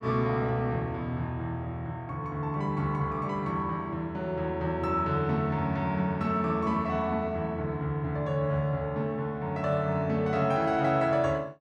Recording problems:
none

